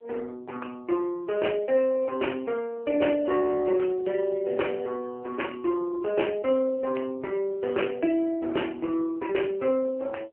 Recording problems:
phone line; 280 Hz to 3.1 kHz, AMR-NB

